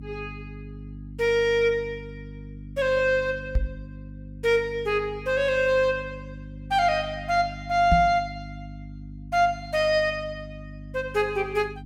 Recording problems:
hum; 50 Hz, harmonics up to 300 Hz, SNR 16 dB
microphone bump; at 3.5 s and at 8 s; peak +4 dB vs average level

